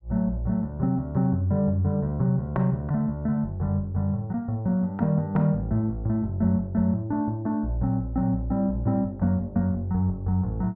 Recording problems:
treble cut off; nothing above 8 kHz

